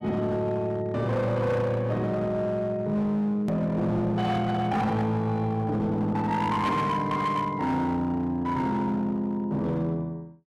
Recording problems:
distorted audio; hard clipping, signal-to-distortion ratio 11 dB
click at an edit; at 3.5 s

